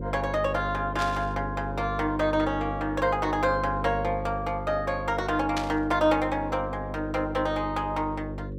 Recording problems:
electrical hum; 50 Hz, harmonics up to 550 Hz, SNR 8 dB
burst of static; at 1 s and at 5.5 s; peak -1 dB vs average level

